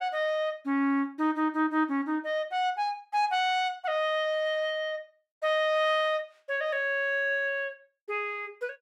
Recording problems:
none

